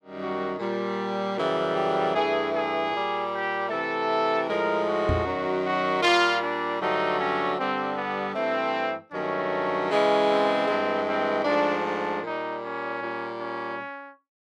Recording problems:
microphone thump; at 5 s; peak +1 dB vs average level

